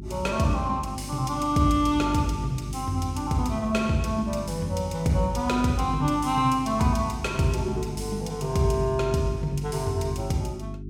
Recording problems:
electrical hum; 50 Hz, harmonics up to 400 Hz, SNR 10 dB

